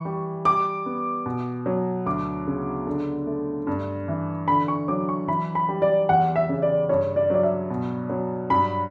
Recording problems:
none

